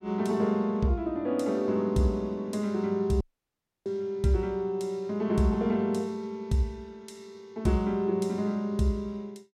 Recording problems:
dropout; at 3 s for 0.5 s

